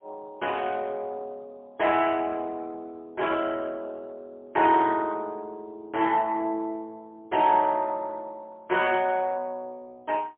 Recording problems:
phone line; 300 Hz to 3.3 kHz, AMR-NB, then MP3

